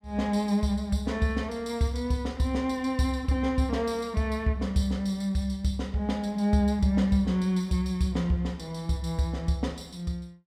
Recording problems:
none

